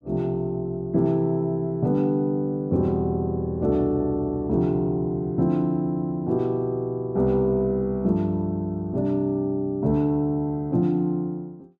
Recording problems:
none

